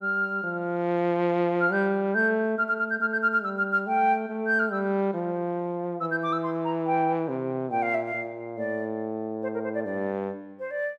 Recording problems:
none

